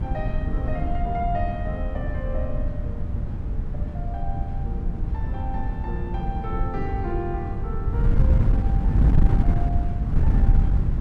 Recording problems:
wind noise; below 100 Hz, SNR -9 dB

